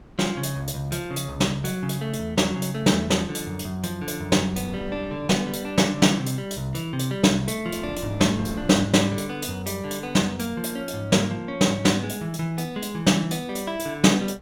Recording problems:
wind on the microphone; below 380 Hz, SNR 21 dB

